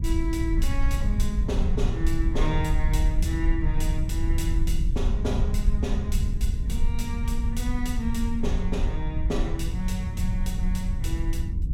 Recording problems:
rumble; below 70 Hz, SNR -4 dB

